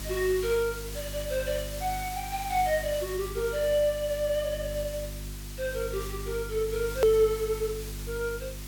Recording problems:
hum; 50 Hz, harmonics up to 400 Hz, SNR 11 dB
background hiss; slope +1 dB per octave, SNR 12 dB
edit click; at 7 s

